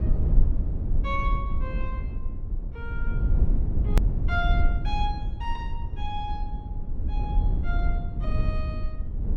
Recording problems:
low-frequency rumble; below 70 Hz, SNR -7 dB
hard cut with a click; at 4 s

